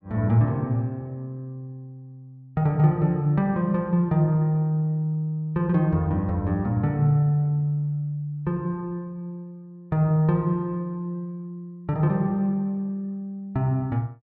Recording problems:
none

